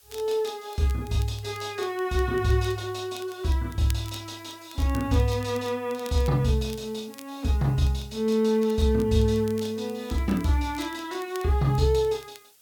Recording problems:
hiss; slope +1 dB per octave, SNR 28 dB
crackling; vinyl, SNR 23 dB

